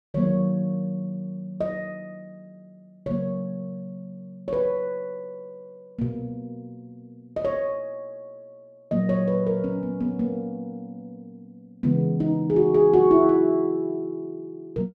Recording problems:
none

